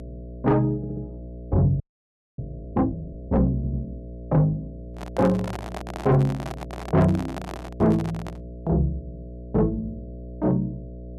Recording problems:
distorted audio; soft clipping, signal-to-distortion ratio 11 dB
hum; 60 Hz, harmonics up to 660 Hz, SNR 15 dB
audio stuttering; at 1 s and at 3.5 s
frozen audio; at 2 s for 0.5 s
microphone handling noise; from 5 to 8.5 s; peak -6 dB vs average level

